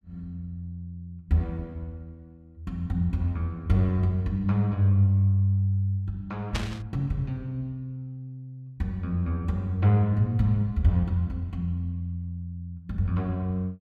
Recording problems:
burst of static; at 6.5 s; peak -1 dB vs average level

